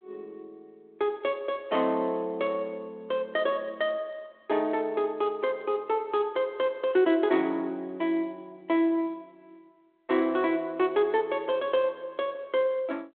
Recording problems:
telephone audio; 280 Hz to 3.6 kHz, G.726

